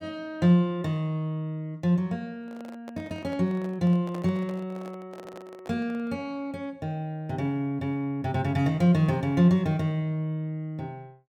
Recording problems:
handling noise; from 2.5 to 6 s; peak -10 dB vs average level
stutter; at 5 s

